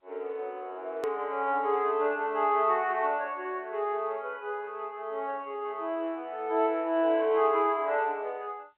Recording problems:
phone line; 280 Hz to 3.3 kHz, G.711
hard cut with a click; at 1 s

